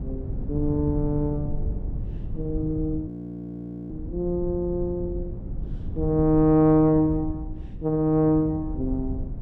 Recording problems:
rumble; below 120 Hz, SNR 10 dB
frozen audio; at 3 s for 1 s

